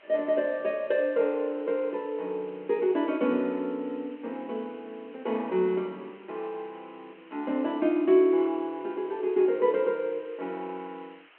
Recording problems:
phone line; 260 Hz to 3.3 kHz, G.726
hiss; SNR 27 dB

